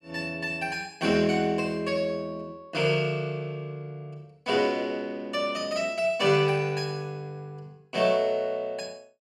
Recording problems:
none

